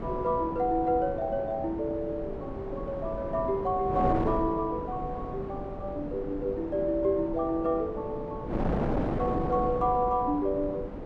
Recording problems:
wind on the microphone; below 530 Hz, SNR 6 dB

